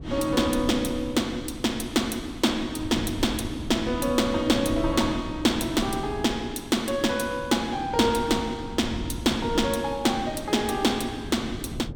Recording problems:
wind on the microphone; below 190 Hz, SNR 12 dB

